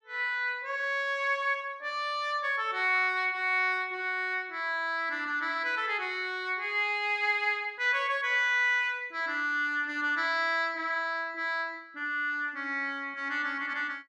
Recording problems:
none

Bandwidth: 12 kHz